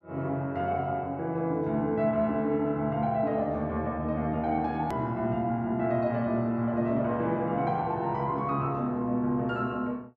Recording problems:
edit click; at 5 s

